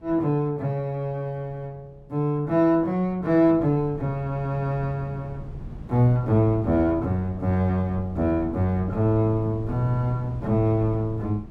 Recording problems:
wind on the microphone; below 200 Hz, SNR 15 dB

